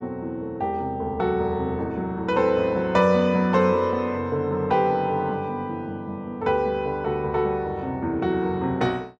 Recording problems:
none

